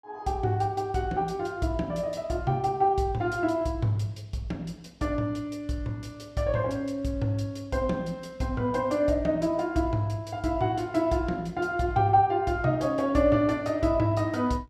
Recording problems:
none

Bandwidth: 14.5 kHz